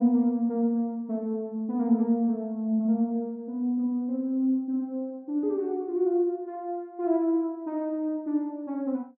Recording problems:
none

